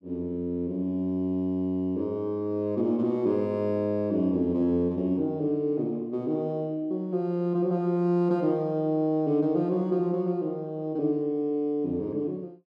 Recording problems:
none

